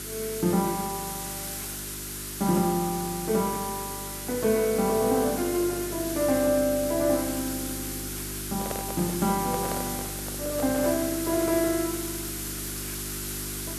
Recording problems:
hum; 50 Hz, harmonics up to 400 Hz, SNR 13 dB
background hiss; SNR 6 dB
handling noise; from 8.5 to 11 s; peak -3 dB vs average level

